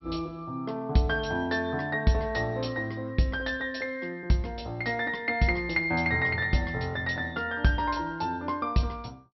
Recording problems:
low-pass filter; nothing above 5.7 kHz

